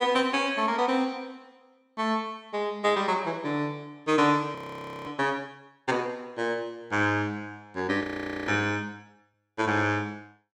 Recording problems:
audio freezing; at 4.5 s for 0.5 s and at 8 s

